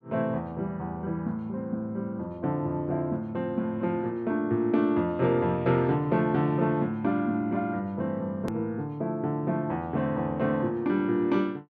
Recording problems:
click at an edit; at 8.5 s

